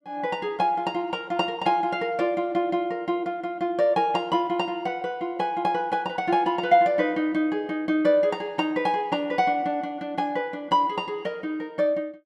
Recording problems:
none

